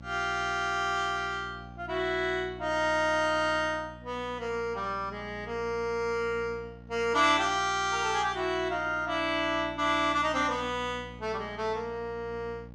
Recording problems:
electrical hum; 60 Hz, harmonics up to 1.1 kHz, SNR 18 dB

